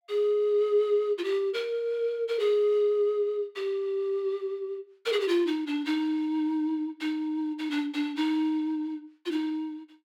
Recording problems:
none

